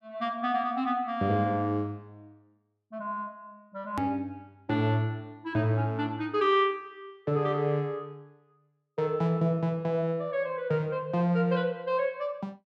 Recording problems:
hard cut with a click; at 4 s

